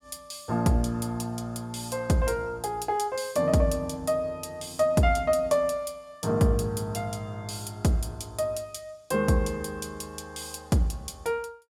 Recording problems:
none

